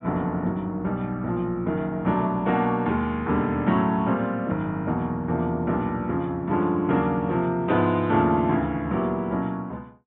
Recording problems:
treble missing; nothing above 3.8 kHz

